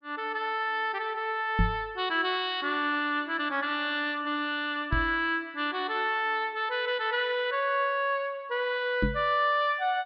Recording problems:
treble cut off; nothing above 5.5 kHz
knock on the microphone; at 1.5 s, at 5 s and at 9 s; peak +5 dB vs average level

